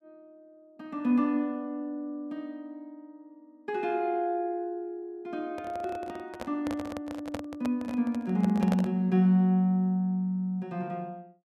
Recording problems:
microphone handling noise; from 5.5 to 9 s; peak -1 dB vs average level

